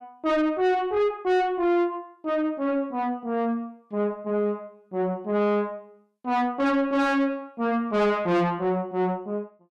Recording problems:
distorted audio; soft clipping, signal-to-distortion ratio 6 dB

